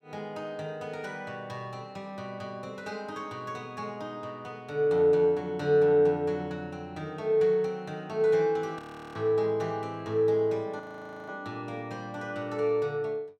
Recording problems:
audio freezing; at 9 s and at 11 s

